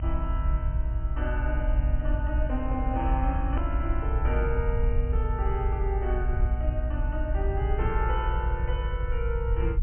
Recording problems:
low-pass filter; nothing above 3.1 kHz
low-frequency rumble; below 60 Hz, SNR -5 dB
hard cut with a click; at 3.5 s

